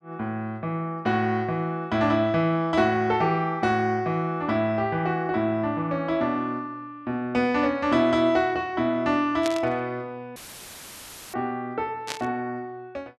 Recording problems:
burst of static; at 9.5 s and at 12 s; peak -1 dB vs average level
dropout; at 10 s for 1 s; filled with static

